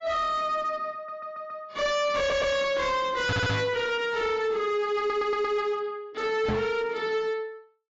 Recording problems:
codec artefacts; AAC, log-spectral distance 2 dB, nothing above 7.3 kHz
distortion; hard clipping, signal-to-distortion ratio 7 dB
stutter; 4 times, first at 1 s
microphone thump; at 3.5 s and at 6.5 s; peak +3 dB vs average level

